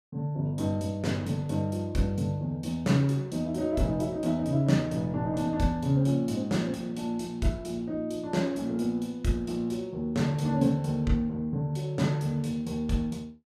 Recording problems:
none

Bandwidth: 15.5 kHz